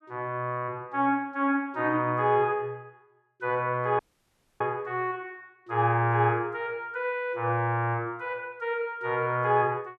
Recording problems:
audio cutting out; at 4 s for 0.5 s

